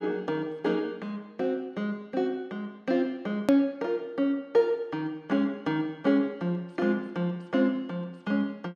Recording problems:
edit click; at 3.5 s

